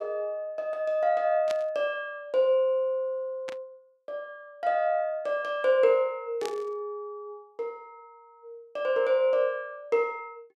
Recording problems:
static burst; at 1.5 s, at 3.5 s and at 6.5 s; peak -7 dB vs average level

